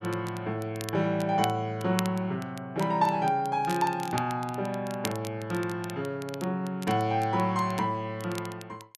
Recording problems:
crackle; vinyl, SNR 15 dB

